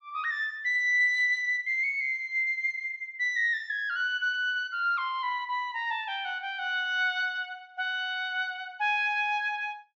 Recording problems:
low-pass filter; nothing above 8 kHz

